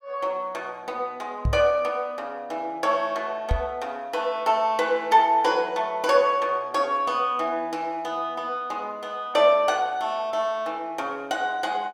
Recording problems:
microphone thump; at 1.5 s and at 3.5 s; peak +4 dB vs average level

